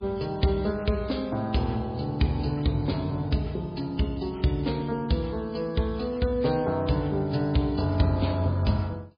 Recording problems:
lossy compression; MP3, log-spectral distance 3 dB, nothing above 5 kHz

